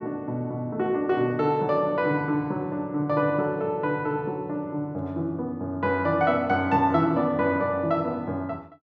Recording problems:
none

